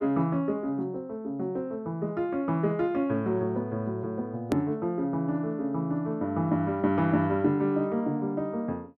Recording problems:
edit click; at 4.5 s

